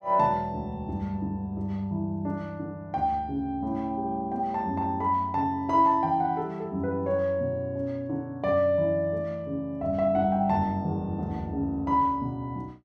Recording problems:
none

